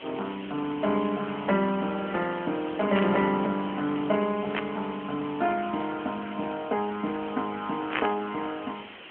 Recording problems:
phone line; 150 Hz to 3.2 kHz, AMR-NB
hiss; SNR 15 dB
static burst; at 3 s, at 4.5 s and at 8 s; peak +4 dB vs average level

